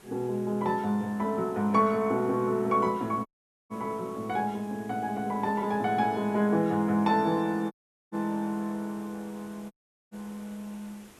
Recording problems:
background hiss; slope -4 dB per octave, SNR 24 dB
audio cutting out; at 3.5 s, at 7.5 s and at 9.5 s

